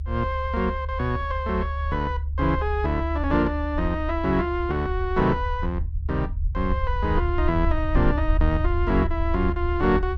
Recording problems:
rumble; below 74 Hz, SNR 2 dB

